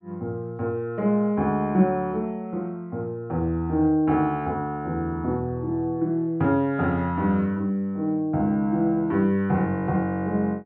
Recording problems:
none

